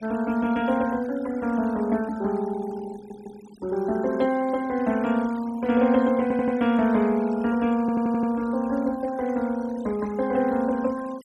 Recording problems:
denoising artefacts; signal-to-artefact ratio 20 dB
stutter; at 3 s, at 6 s and at 8 s

